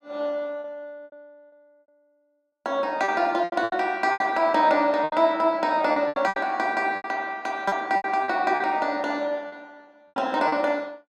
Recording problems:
packet loss; 12% of the sound replaced, filled with repeated pitch periods

